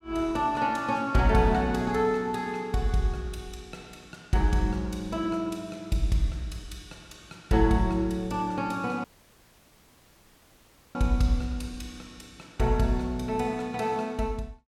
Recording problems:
dropout; at 9 s for 2 s

